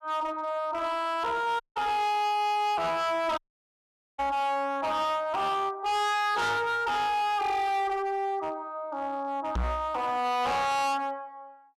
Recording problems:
distortion; hard clipping, signal-to-distortion ratio 6 dB
dropout; at 1.5 s and at 3.5 s for 1 s
microphone bump; at 4 s and at 9.5 s; peak +1 dB vs average level

